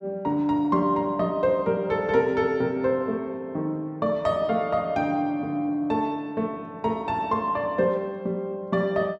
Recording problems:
none

